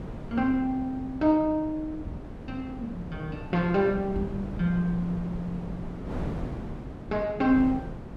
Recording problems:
wind noise; below 350 Hz, SNR 10 dB

